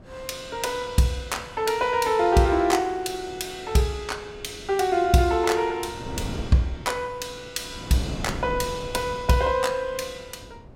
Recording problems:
wind on the microphone; below 340 Hz, SNR 15 dB

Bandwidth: 16.5 kHz